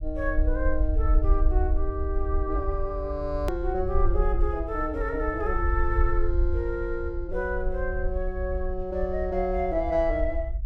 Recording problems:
low-frequency rumble; below 58 Hz, SNR 1 dB
click at an edit; at 3.5 s

